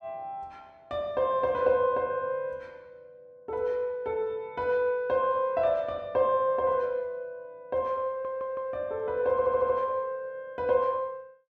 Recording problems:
stutter; at 8 s and at 9.5 s

